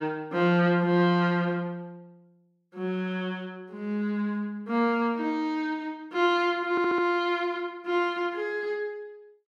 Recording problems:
stutter; at 6.5 s

